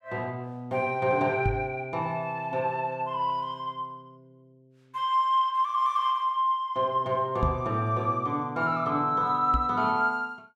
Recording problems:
microphone bump; at 1.5 s, at 7.5 s and at 9.5 s; peak +2 dB vs average level

